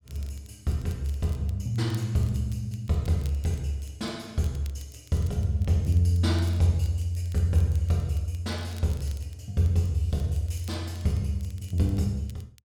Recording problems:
crackling; vinyl, SNR 27 dB

